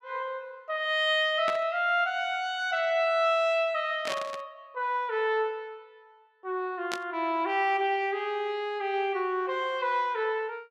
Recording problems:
static burst; at 1.5 s, at 4 s and at 7 s; peak -1 dB vs average level

